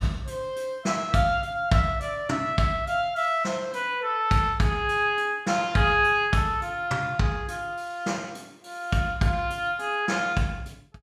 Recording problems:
none

